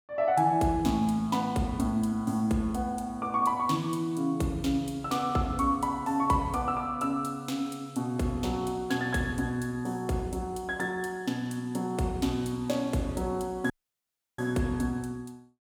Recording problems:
dropout; at 14 s for 0.5 s

